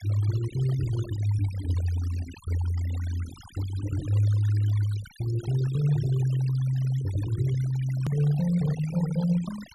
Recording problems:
noise reduction artefacts; signal-to-artefact ratio 17 dB
hard cut with a click; at 8 s

